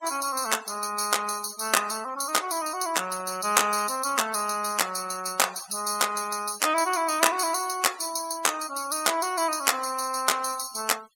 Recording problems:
denoising artefacts; signal-to-artefact ratio 17 dB

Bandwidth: 16.5 kHz